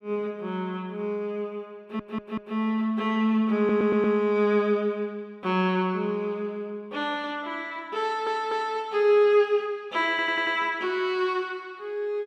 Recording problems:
stutter; 4 times, first at 2 s

